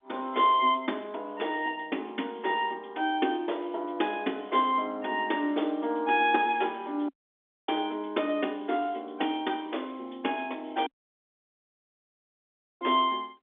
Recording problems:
phone line; 240 Hz to 3.6 kHz, G.711
dropout; at 7 s for 0.5 s and at 11 s for 2 s

